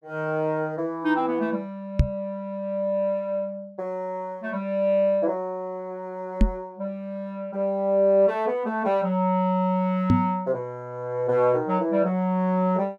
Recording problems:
microphone bump; at 2 s, at 6.5 s and at 10 s; peak +9 dB vs average level

